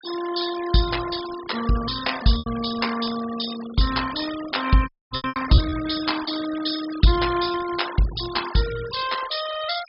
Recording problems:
treble missing; nothing above 5.2 kHz
noise reduction artefacts; signal-to-artefact ratio 11 dB
lost packets; 3% of the sound replaced, filled with repeated pitch periods
dropout; at 5 s

